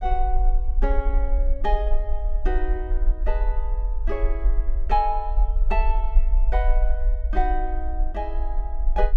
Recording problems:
rumble; below 44 Hz, strongest tone 24 Hz, SNR -4 dB

